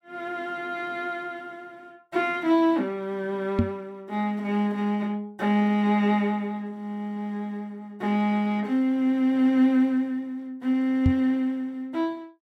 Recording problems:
knock on the microphone; at 3.5 s and at 11 s; peak +6 dB vs average level

